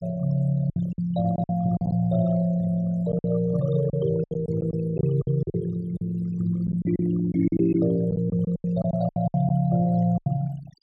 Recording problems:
noise reduction artefacts; signal-to-artefact ratio 19 dB
lost packets; 11% of the sound replaced, filled with silence

